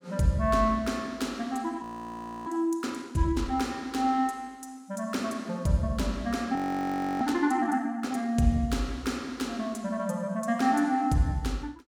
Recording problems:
audio freezing; at 2 s for 0.5 s and at 6.5 s for 0.5 s

